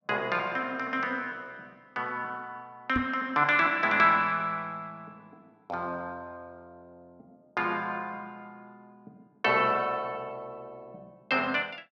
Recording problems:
microphone bump; at 3 s; peak +1 dB vs average level

